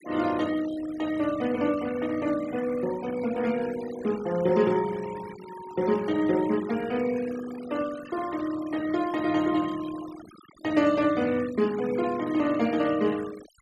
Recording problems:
denoising artefacts; signal-to-artefact ratio 17 dB

